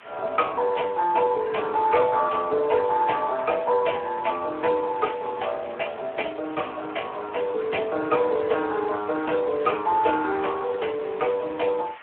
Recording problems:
phone line; 340 Hz to 3.1 kHz, Speex
hiss; SNR 20 dB

